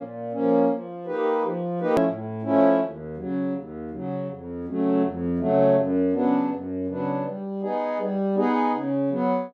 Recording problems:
hard cut with a click; at 2 s

